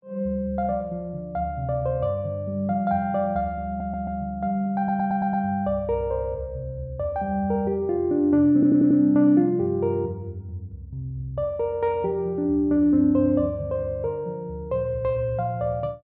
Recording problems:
stutter; at 3.5 s, at 5 s and at 8.5 s

